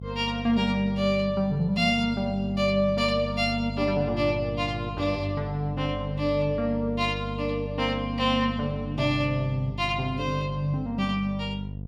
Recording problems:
electrical hum; 50 Hz, harmonics up to 500 Hz, SNR 9 dB

